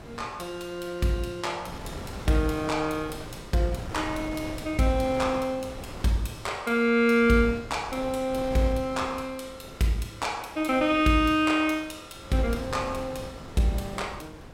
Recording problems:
wind noise; below 690 Hz, SNR 14 dB

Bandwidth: 16.5 kHz